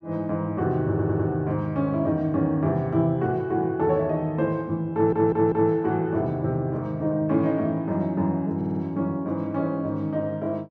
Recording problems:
stutter; at 1 s, at 5 s and at 8.5 s

